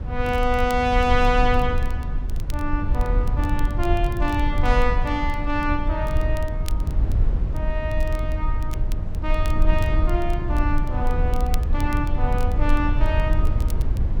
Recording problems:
rumble; below 66 Hz, SNR -1 dB
crackle; vinyl, SNR 21 dB

